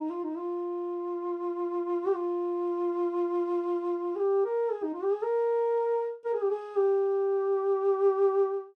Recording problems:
none

